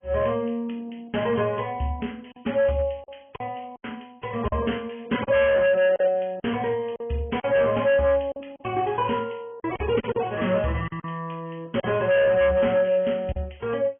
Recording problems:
low-pass filter; nothing above 3.2 kHz
lossy codec; AAC, log-spectral distance 4 dB
distorted audio; hard clipping, signal-to-distortion ratio 7 dB
packet loss; 6% of the sound replaced, filled with silence

